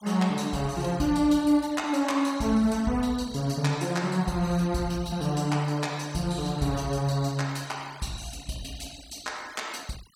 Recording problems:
denoising artefacts; signal-to-artefact ratio 20 dB

